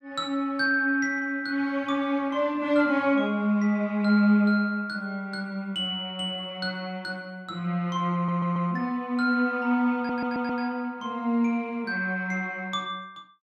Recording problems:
audio stuttering; at 8 s and at 10 s

